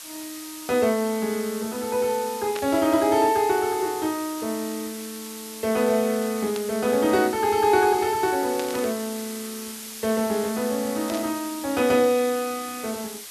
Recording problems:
background hiss; slope +3 dB per octave, SNR 12 dB
static burst; 4 times, first at 2.5 s; peak -6 dB vs average level

